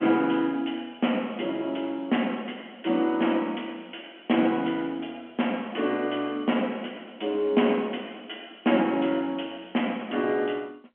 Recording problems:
phone line; 190 Hz to 3.3 kHz, G.711

